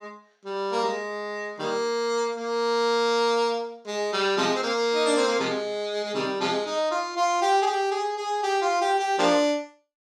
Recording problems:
none

